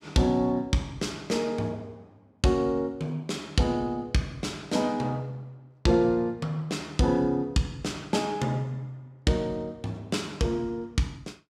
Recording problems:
none

